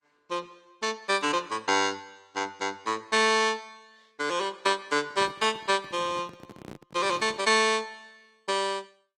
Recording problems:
lossy codec; Opus, log-spectral distance 3 dB, nothing above 15.5 kHz
handling noise; from 5 to 7.5 s; peak -11 dB vs average level

